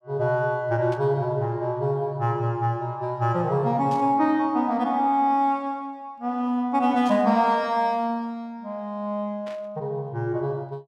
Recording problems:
static burst; 4 times, first at 1 s; peak -15 dB vs average level

